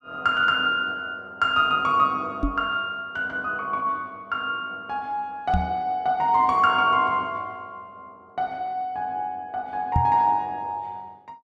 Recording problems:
microphone thump; at 2.5 s, at 5.5 s and at 10 s; peak +4 dB vs average level

